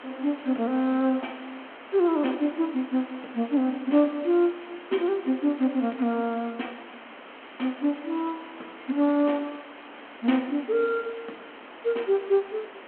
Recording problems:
telephone audio; 190 Hz to 3.3 kHz, G.726
background hiss; SNR 17 dB

